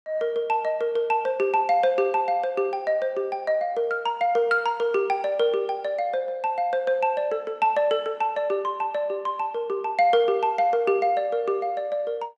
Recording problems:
none

